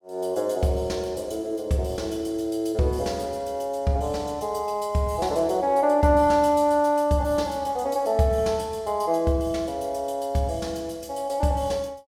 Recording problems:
none

